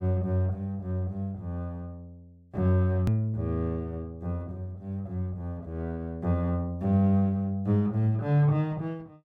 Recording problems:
click at an edit; at 3 s

